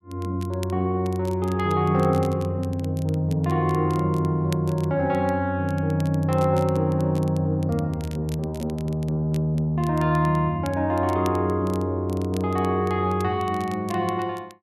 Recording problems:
crackling; vinyl, SNR 23 dB

